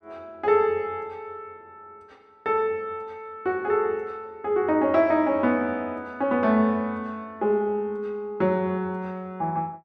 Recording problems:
none

